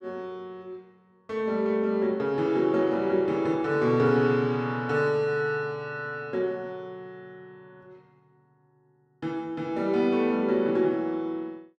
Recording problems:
none

